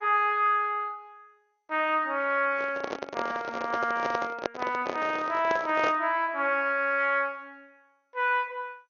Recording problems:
lossy compression; MP2, then AAC, log-spectral distance 3 dB, nothing above 6.2 kHz
microphone handling noise; from 2.5 to 6 s; peak +2 dB vs average level

